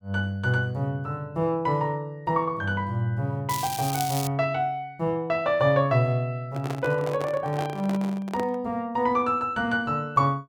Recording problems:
crackling; at 3.5 s; loose cable, SNR 7 dB
microphone handling noise; from 6.5 to 8.5 s; peak -4 dB vs average level

